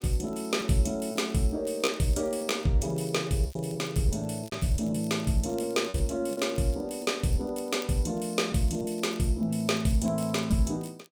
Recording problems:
crackling; vinyl, SNR 25 dB
lost packets; 5% of the sound replaced, filled with repeated pitch periods

